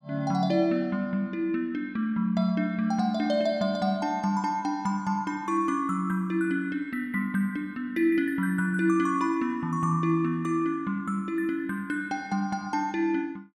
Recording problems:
none

